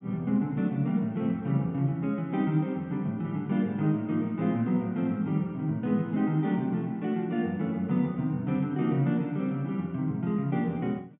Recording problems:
low-pass filter; nothing above 4 kHz

